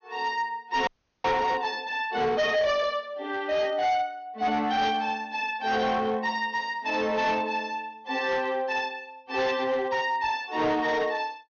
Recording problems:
treble cut off; nothing above 6.7 kHz
distortion; hard clipping, signal-to-distortion ratio 11 dB
frozen audio; at 1 s

